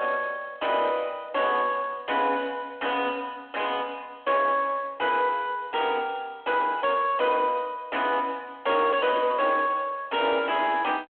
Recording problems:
telephone audio; 220 Hz to 3.4 kHz, G.726
distorted audio; soft clipping, signal-to-distortion ratio 4 dB

